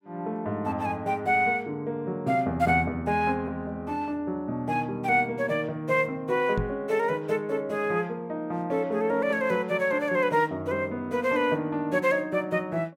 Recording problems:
microphone bump; at 6.5 s; peak 0 dB vs average level

